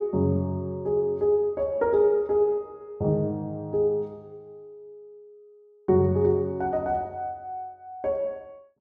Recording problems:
none

